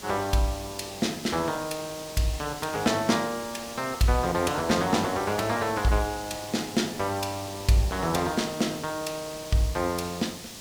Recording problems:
hiss; SNR 12 dB

